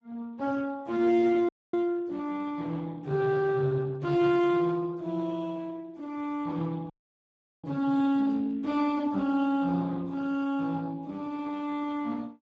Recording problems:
lossy compression; Speex, log-spectral distance 3 dB
audio cutting out; at 1.5 s and at 7 s for 0.5 s

